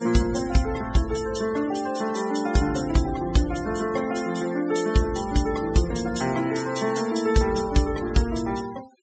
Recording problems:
treble cut off; nothing above 8 kHz
denoising artefacts; signal-to-artefact ratio 16 dB

